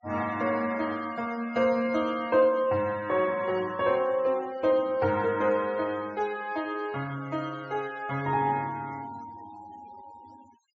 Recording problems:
low-pass filter; nothing above 8 kHz
noise reduction artefacts; signal-to-artefact ratio 22 dB

